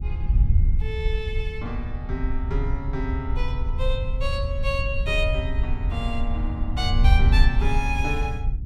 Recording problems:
wind noise; below 74 Hz, SNR -4 dB

